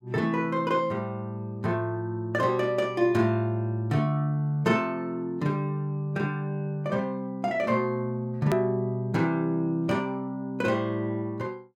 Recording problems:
edit click; at 8.5 s

